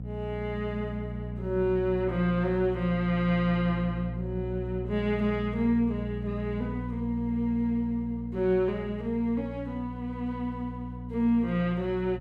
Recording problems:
mains hum; 60 Hz, harmonics up to 540 Hz, SNR 8 dB

